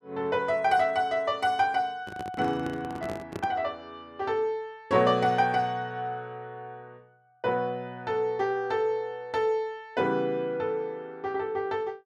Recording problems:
microphone handling noise; from 2 to 3.5 s; peak -4 dB vs average level

